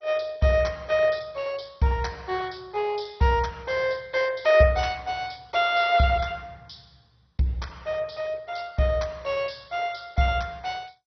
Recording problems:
codec artefacts; MP2, log-spectral distance 5 dB, nothing above 5.8 kHz

